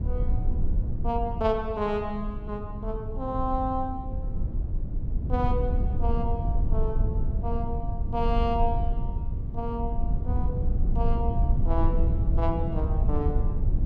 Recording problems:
rumble; below 78 Hz, SNR -2 dB

